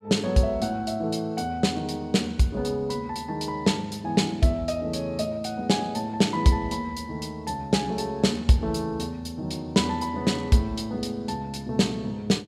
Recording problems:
none

